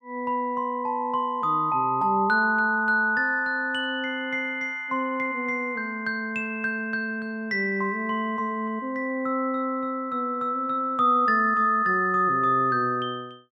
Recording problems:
none

